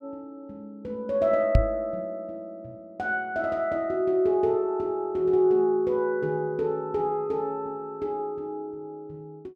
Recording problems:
microphone bump; at 1.5 s; peak +9 dB vs average level

